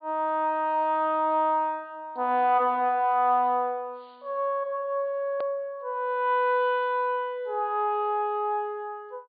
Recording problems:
low-pass filter; nothing above 4.7 kHz
click at an edit; at 5.5 s

